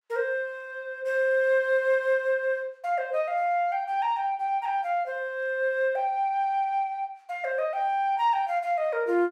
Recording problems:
none

